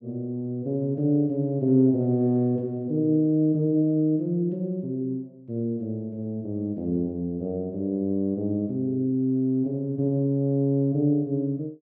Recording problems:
none

